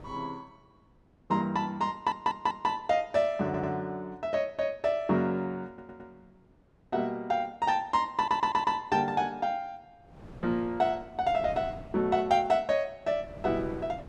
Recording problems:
wind noise; below 410 Hz, SNR 18 dB
audio stuttering; 4 times, first at 2 s

